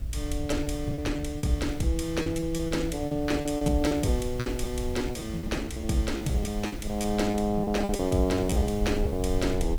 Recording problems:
electrical hum; 60 Hz, harmonics up to 660 Hz, SNR 27 dB
hiss; slope -2 dB per octave, SNR 21 dB
low-frequency rumble; below 88 Hz, SNR 8 dB
lost packets; 15% of the sound replaced, filled with repeated pitch periods

